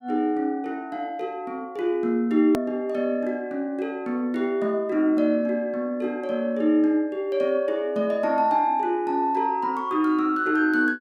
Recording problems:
edit click; at 2.5 s

